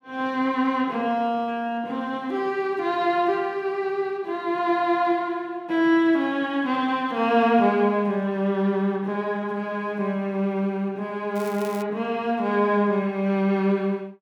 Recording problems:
crackling; at 11 s; loose cable, SNR 21 dB

